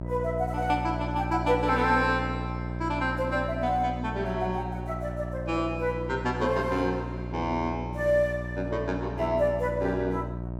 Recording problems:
hum; 60 Hz, harmonics up to 960 Hz, SNR 6 dB

